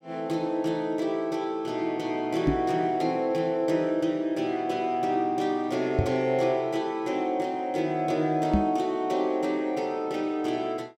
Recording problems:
microphone thump; at 2.5 s, at 6 s and at 8.5 s; peak +6 dB vs average level

